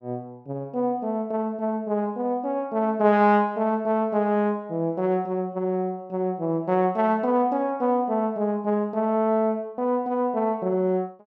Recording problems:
none

